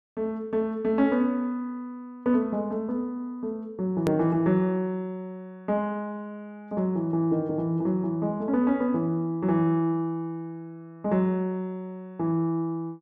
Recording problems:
click at an edit; at 4 s

